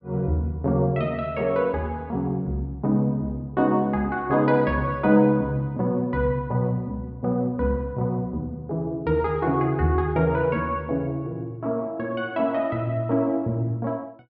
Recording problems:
low-pass filter; nothing above 5.5 kHz

